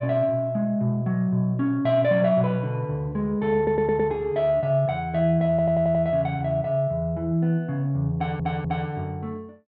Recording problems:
stutter; at 3.5 s, at 5.5 s and at 8 s

